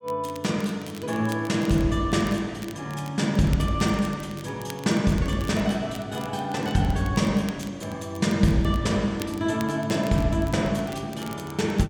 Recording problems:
crackle; vinyl, SNR 21 dB

